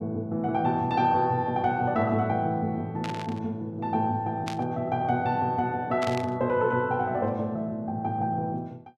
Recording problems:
static burst; at 3 s, at 4.5 s and at 6 s; peak -5 dB vs average level

